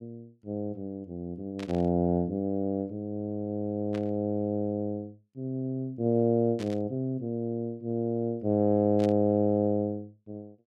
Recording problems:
static burst; 4 times, first at 1.5 s; peak -10 dB vs average level

